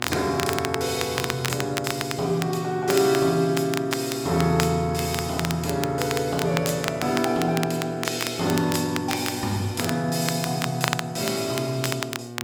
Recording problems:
electrical hum; 60 Hz, harmonics up to 2.3 kHz, SNR 13 dB
crackle; vinyl, SNR 7 dB

